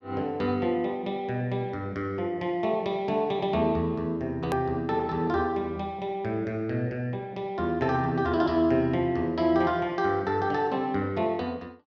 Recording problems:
click at an edit; at 4.5 s

